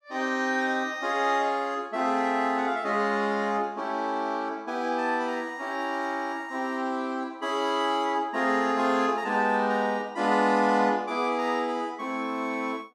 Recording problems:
none

